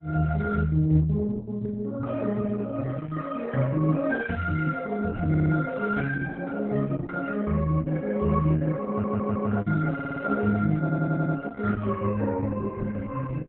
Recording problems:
lossy compression; Opus, log-spectral distance 3 dB, nothing above 3.8 kHz
stutter; 4 times, first at 5.5 s

